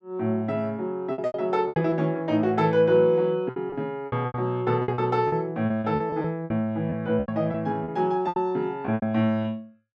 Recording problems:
packet loss; 12% of the sound replaced, filled with repeated pitch periods

